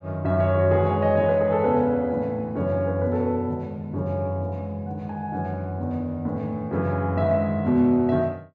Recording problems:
none

